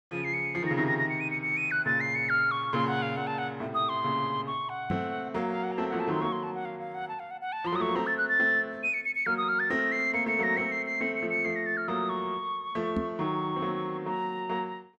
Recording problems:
knock on the microphone; at 5 s and at 13 s; peak +1 dB vs average level

